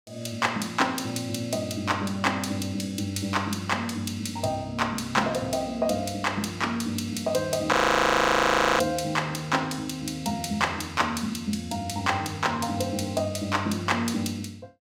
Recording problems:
frozen audio; at 7.5 s for 1 s

